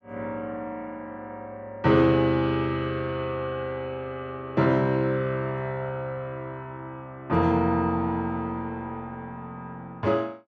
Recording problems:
none

